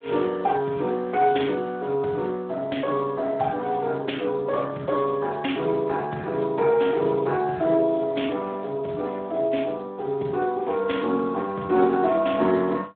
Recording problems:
telephone audio; 190 Hz to 3.6 kHz, Speex

